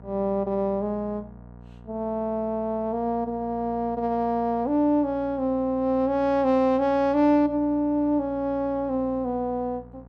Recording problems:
hum; 60 Hz, harmonics up to 1.4 kHz, SNR 21 dB

